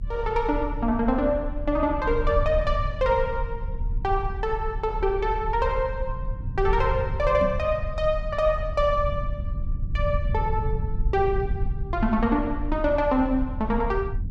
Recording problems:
low-frequency rumble; below 76 Hz, SNR 6 dB
microphone thump; at 7.5 s; peak -1 dB vs average level

